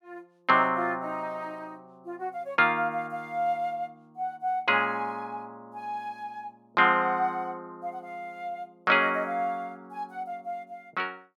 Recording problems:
none

